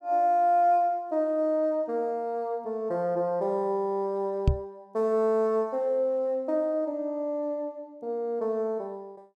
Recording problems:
knock on the microphone; at 4.5 s; peak +8 dB vs average level

